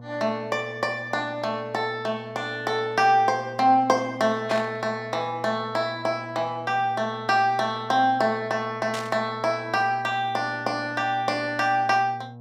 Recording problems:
hum; 60 Hz, harmonics up to 1.1 kHz, SNR 18 dB
burst of static; at 4.5 s and at 9 s; peak -4 dB vs average level

